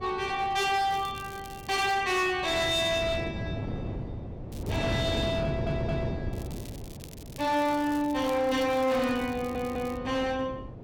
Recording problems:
distorted audio; hard clipping, signal-to-distortion ratio 11 dB
wind on the microphone; below 360 Hz, SNR 9 dB
crackling; from 1 to 2 s, at 4.5 s and from 6.5 to 10 s; loose cable, SNR 22 dB
stutter; at 5.5 s and at 9.5 s

